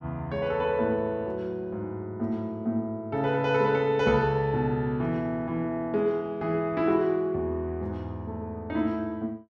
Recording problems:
none

